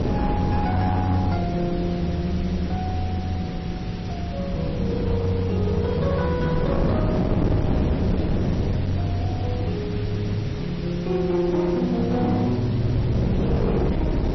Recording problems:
lossy compression; MP3, log-spectral distance 4 dB, nothing above 5.5 kHz
distortion; hard clipping, uneven, signal-to-distortion ratio 11 dB
background hiss; slope -2 dB per octave, SNR 17 dB
wind on the microphone; below 320 Hz, SNR 3 dB

